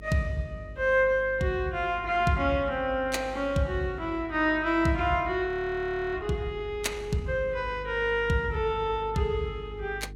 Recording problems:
hum; 50 Hz, harmonics up to 450 Hz, SNR 16 dB
audio freezing; at 5.5 s for 0.5 s

